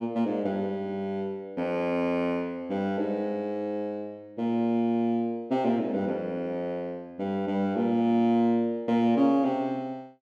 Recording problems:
none

